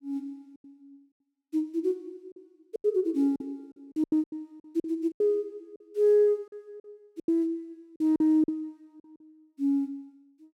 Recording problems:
packet loss; 11% of the sound replaced, filled with silence

